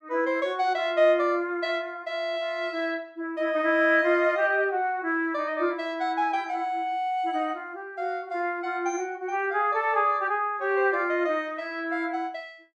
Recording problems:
none

